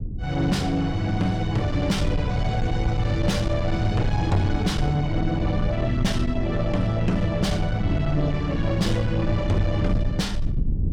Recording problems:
distorted audio; soft clipping, signal-to-distortion ratio 10 dB
rumble; below 130 Hz, SNR 4 dB

